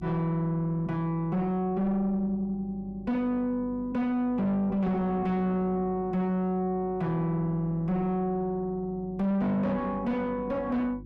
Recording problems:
distortion; soft clipping, signal-to-distortion ratio 6 dB
hum; 50 Hz, harmonics up to 550 Hz, SNR 19 dB

